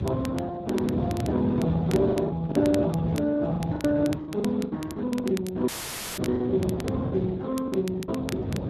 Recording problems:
lossy compression; Speex, log-spectral distance 3 dB
wind on the microphone; below 330 Hz, SNR 6 dB
crackle; vinyl, SNR 17 dB
lost packets; 10% of the sound replaced, filled with the last packet
audio cutting out; at 5.5 s for 0.5 s

